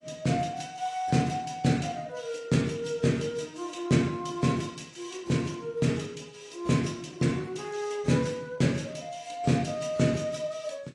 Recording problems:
codec artefacts; AAC, log-spectral distance 3 dB, nothing above 11 kHz

